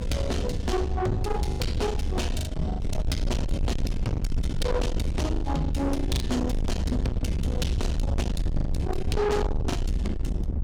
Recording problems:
distorted audio; soft clipping, signal-to-distortion ratio 7 dB
rumble; below 150 Hz, SNR 0 dB
lost packets; 7% of the sound replaced, filled with the last packet

